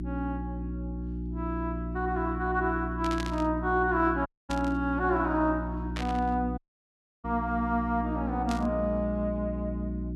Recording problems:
hum; 60 Hz, harmonics up to 360 Hz, SNR 5 dB
burst of static; 4 times, first at 3 s; peak -4 dB vs average level
dropout; at 4.5 s and at 6.5 s for 0.5 s

